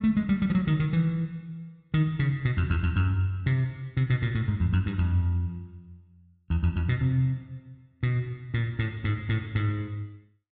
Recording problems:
none

